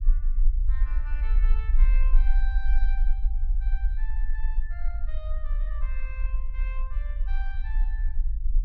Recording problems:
low-frequency rumble; below 40 Hz, strongest tone 22 Hz, SNR -17 dB

